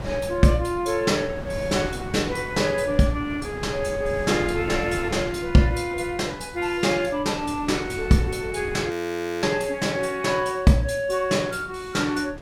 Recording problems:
wind noise; below 390 Hz, SNR 13 dB
frozen audio; at 9 s for 0.5 s

